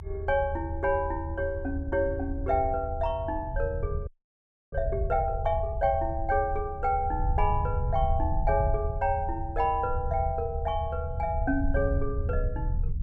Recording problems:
low-frequency rumble; below 80 Hz, SNR 4 dB
audio freezing; at 4 s for 0.5 s

